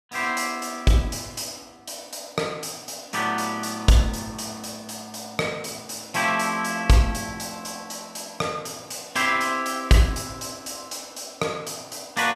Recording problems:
none

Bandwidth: 14.5 kHz